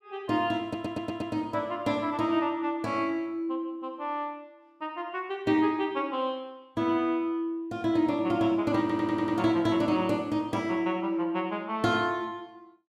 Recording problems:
audio stuttering; at 0.5 s and at 9 s

